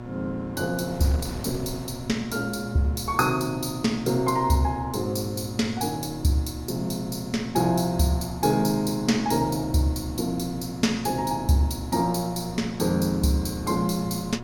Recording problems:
hum; 60 Hz, harmonics up to 1.8 kHz, SNR 13 dB
wind noise; below 370 Hz, SNR 19 dB

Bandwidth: 18 kHz